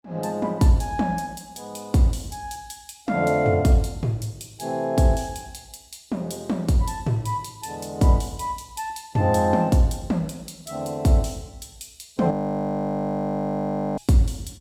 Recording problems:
audio freezing; at 12 s for 1.5 s

